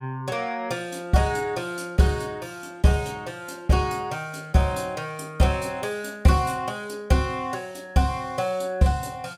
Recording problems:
none

